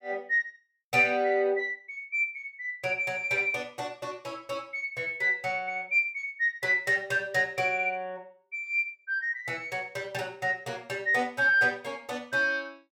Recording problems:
none

